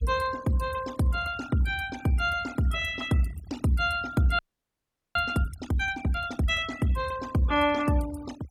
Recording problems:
noise reduction artefacts; signal-to-artefact ratio 18 dB
frozen audio; at 4.5 s for 1 s

